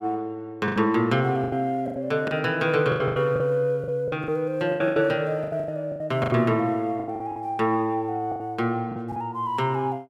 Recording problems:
lost packets; 14% of the sound replaced, filled with the last packet

